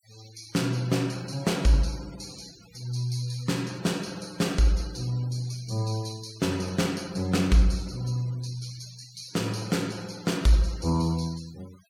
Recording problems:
noise reduction artefacts; signal-to-artefact ratio 21 dB

